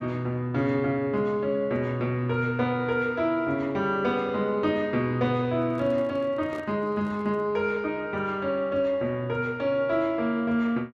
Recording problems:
microphone handling noise; from 5.5 to 7.5 s; peak -10 dB vs average level

